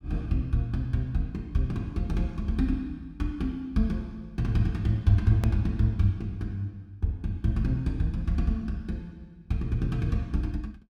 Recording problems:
edit click; at 5.5 s

